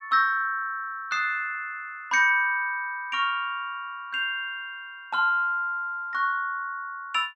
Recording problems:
none

